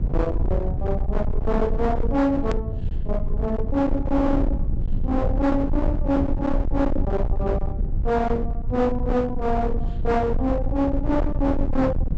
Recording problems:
low-pass filter; nothing above 7.9 kHz
distorted audio; hard clipping, uneven, signal-to-distortion ratio 7 dB
hum; 50 Hz, harmonics up to 650 Hz, SNR 17 dB
low-frequency rumble; below 100 Hz, SNR 3 dB
hard cut with a click; at 2.5 s

